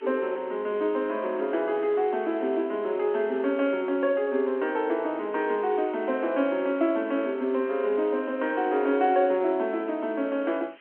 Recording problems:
telephone audio; 220 Hz to 3.2 kHz, G.711
background hiss; SNR 27 dB

